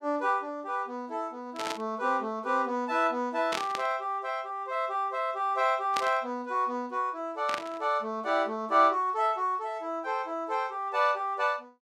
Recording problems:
burst of static; 4 times, first at 1.5 s; peak 0 dB vs average level

